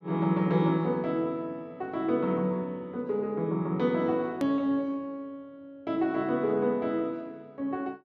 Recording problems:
low-pass filter; nothing above 8 kHz
hard cut with a click; at 4.5 s

